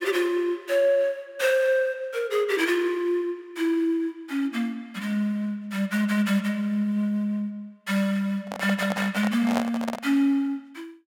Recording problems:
microphone handling noise; from 8.5 to 10 s; peak +2 dB vs average level

